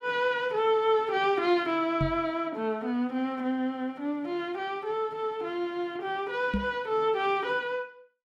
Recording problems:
microphone thump; at 2 s and at 6.5 s; peak +3 dB vs average level

